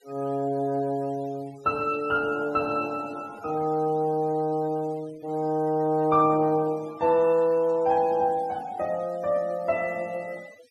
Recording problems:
noise reduction artefacts; signal-to-artefact ratio 25 dB

